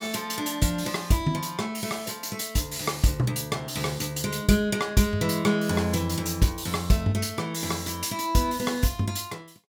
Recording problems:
none

